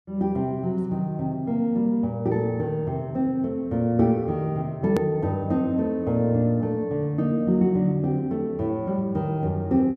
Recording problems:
edit click; at 5 s

